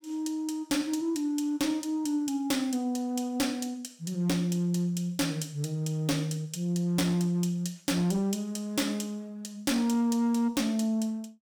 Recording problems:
distorted audio; hard clipping, signal-to-distortion ratio 11 dB

